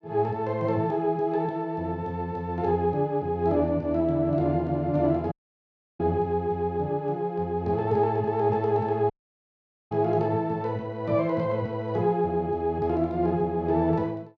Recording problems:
dropout; at 5.5 s for 0.5 s and at 9 s for 1 s

